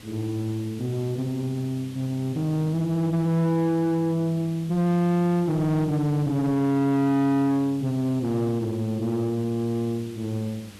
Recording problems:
distortion; soft clipping, signal-to-distortion ratio 7 dB
hum; 50 Hz, harmonics up to 800 Hz, SNR 25 dB
hiss; slope -2 dB per octave, SNR 22 dB

